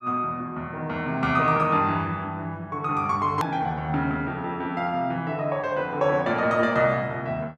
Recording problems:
click at an edit; at 3.5 s

